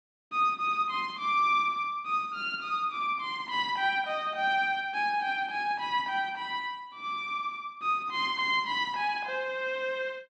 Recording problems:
none

